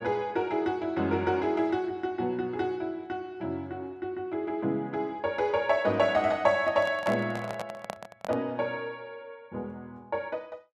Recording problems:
handling noise; from 6.5 to 8.5 s; peak -1 dB vs average level

